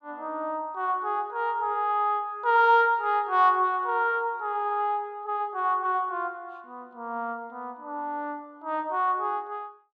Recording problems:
none

